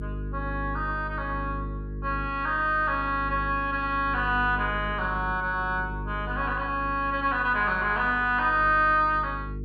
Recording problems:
hum; 50 Hz, harmonics up to 450 Hz, SNR 11 dB

